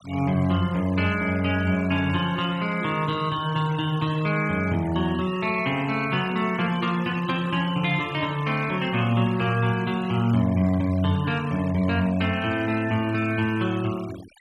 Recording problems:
noise reduction artefacts; signal-to-artefact ratio 18 dB

